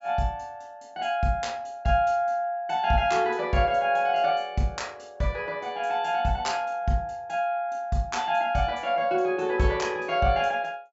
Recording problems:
low-pass filter; nothing above 8 kHz

